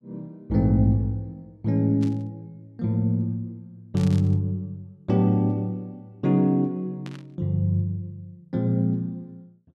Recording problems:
burst of static; at 2 s, at 4 s and at 7 s; peak -14 dB vs average level

